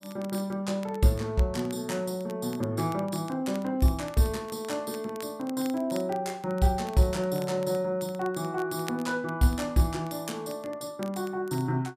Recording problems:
crackling; vinyl, SNR 21 dB

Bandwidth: 15 kHz